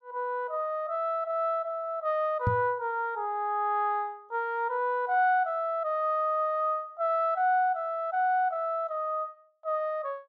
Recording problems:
microphone bump; at 2.5 s; peak +4 dB vs average level

